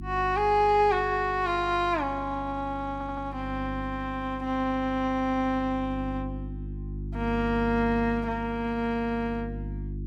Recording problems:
electrical hum; 50 Hz, harmonics up to 350 Hz, SNR 11 dB
stutter; at 3 s

